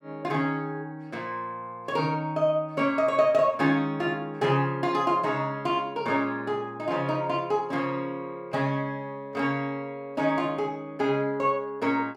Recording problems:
none

